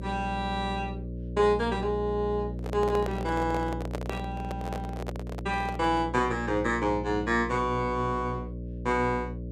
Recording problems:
hum; 60 Hz, harmonics up to 600 Hz, SNR 8 dB
handling noise; from 2.5 to 6 s; peak -2 dB vs average level

